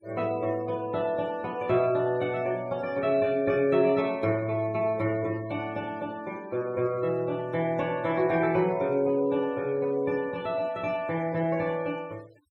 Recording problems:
denoising artefacts; signal-to-artefact ratio 24 dB

